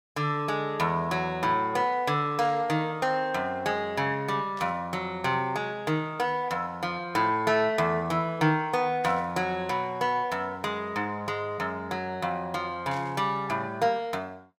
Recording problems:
static burst; 4 times, first at 2.5 s; peak -14 dB vs average level

